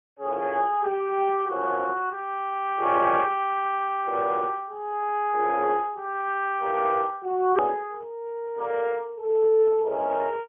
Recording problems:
telephone audio; 340 Hz to 3.5 kHz, Speex
edit click; at 7.5 s

